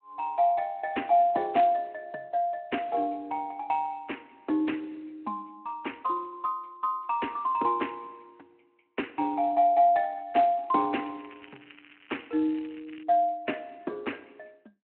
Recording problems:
phone line; 220 Hz to 3.2 kHz, Speex
crackle; from 11 to 13 s; loose cable, SNR 24 dB

